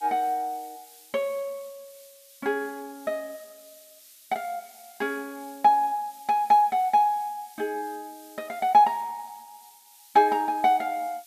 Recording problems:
background hiss; slope +8 dB per octave, SNR 24 dB

